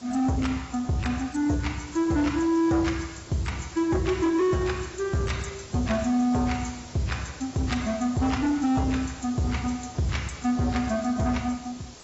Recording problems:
codec artefacts; AAC, log-spectral distance 9 dB, nothing above 7.8 kHz
distortion; soft clipping, signal-to-distortion ratio 11 dB
hiss; SNR 18 dB

